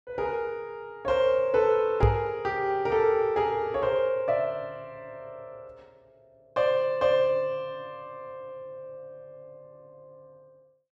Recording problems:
microphone bump; at 2 s; peak +6 dB vs average level

